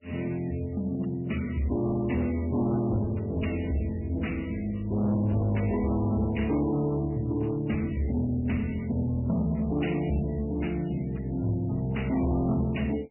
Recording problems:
codec artefacts; MP3, then MP3, log-spectral distance 5 dB, nothing above 2.9 kHz
distortion; soft clipping, signal-to-distortion ratio 12 dB

